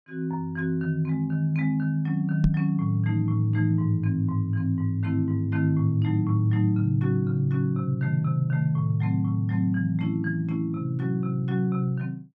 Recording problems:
microphone bump; at 2.5 s; peak +3 dB vs average level

